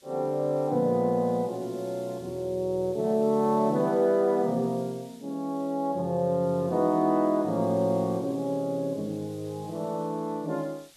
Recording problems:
background hiss; SNR 26 dB

